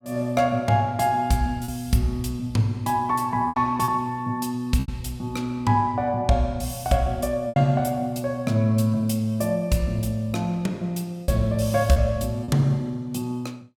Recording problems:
packet loss; 3% of the sound replaced, filled with repeated pitch periods

